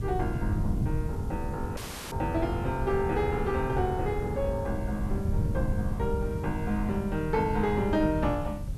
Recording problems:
hiss; slope +1 dB per octave, SNR 25 dB
wind noise; below 130 Hz, SNR 3 dB
dropout; at 2 s

